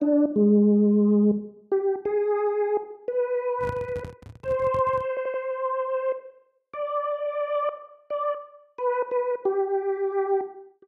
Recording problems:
microphone handling noise; from 3.5 to 5 s; peak -5 dB vs average level
stutter; at 5 s

